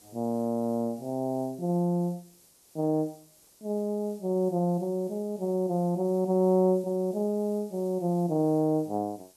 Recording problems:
hiss; SNR 27 dB

